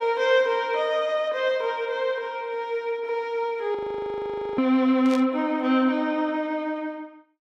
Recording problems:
frozen audio; at 4 s for 1 s
static burst; at 5 s; peak -8 dB vs average level

